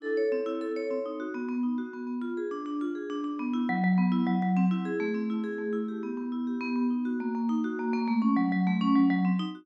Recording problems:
none

